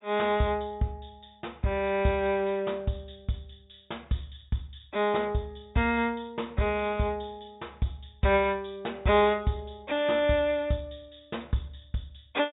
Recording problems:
treble missing; nothing above 4 kHz

